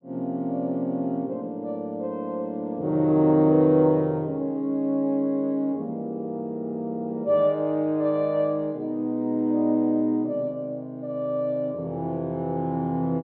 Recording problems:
treble missing; nothing above 4.1 kHz

